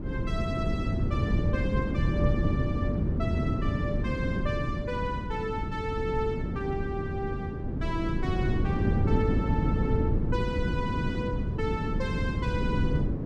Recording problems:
wind on the microphone; below 230 Hz, SNR -5 dB

